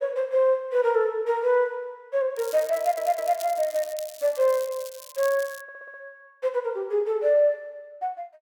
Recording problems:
crackling; from 2.5 to 5.5 s; loose cable, SNR 17 dB
stutter; at 3 s and at 5.5 s

